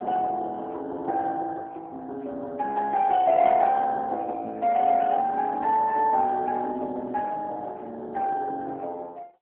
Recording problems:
telephone audio; 280 Hz to 3.5 kHz, AMR-NB

